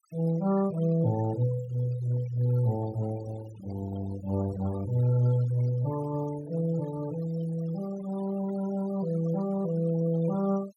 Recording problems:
denoising artefacts; signal-to-artefact ratio 18 dB

